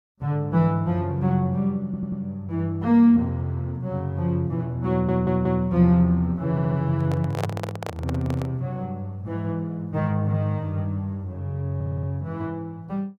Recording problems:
audio stuttering; 4 times, first at 2 s
microphone handling noise; from 7 to 8.5 s; peak 0 dB vs average level

